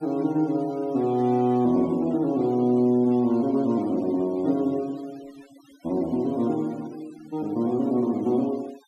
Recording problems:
denoising artefacts; signal-to-artefact ratio 26 dB

